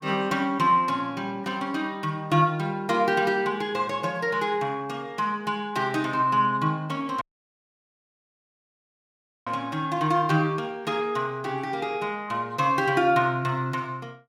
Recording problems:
dropout; at 7 s for 2.5 s

